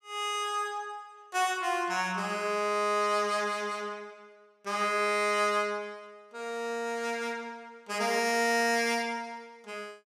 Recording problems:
none

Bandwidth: 14.5 kHz